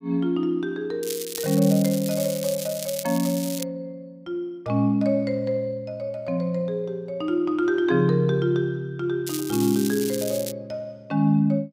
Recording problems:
crackling; from 1 to 3.5 s and from 9.5 to 11 s; loose cable, SNR 9 dB

